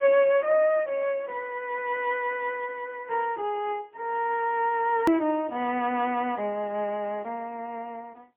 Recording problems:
telephone audio; 260 Hz to 3.3 kHz, AMR-NB, then MP3
click at an edit; at 5 s

